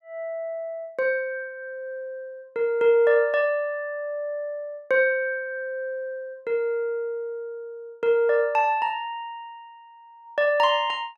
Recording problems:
none

